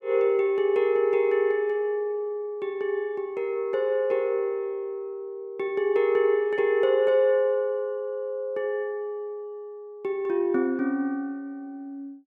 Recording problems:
none

